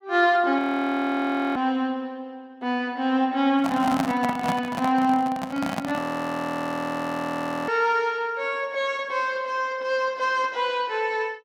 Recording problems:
audio freezing; at 0.5 s for 1 s and at 6 s for 1.5 s
microphone handling noise; from 3.5 to 6 s; peak +1 dB vs average level

